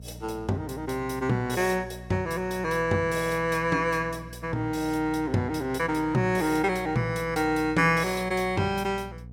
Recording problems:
hum; 60 Hz, harmonics up to 480 Hz, SNR 17 dB

